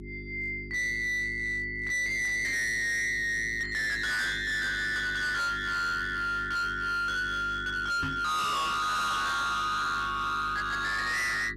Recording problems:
distorted audio; hard clipping, signal-to-distortion ratio 7 dB
electrical hum; 50 Hz, harmonics up to 1.4 kHz, SNR 16 dB
microphone thump; at 8 s; peak -2 dB vs average level

